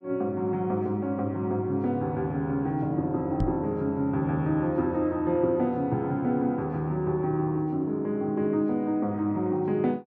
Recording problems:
microphone bump; at 3.5 s; peak +4 dB vs average level

